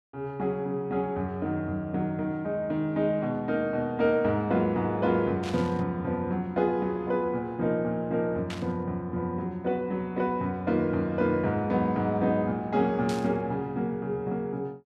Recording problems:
burst of static; at 5.5 s, at 8.5 s and at 13 s; peak -6 dB vs average level

